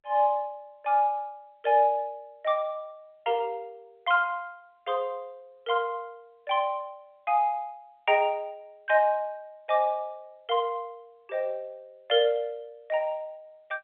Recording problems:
telephone audio; 340 Hz to 3.7 kHz, G.711

